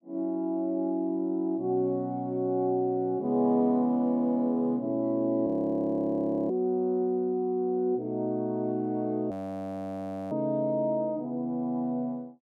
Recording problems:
frozen audio; at 5.5 s for 1 s and at 9.5 s for 1 s

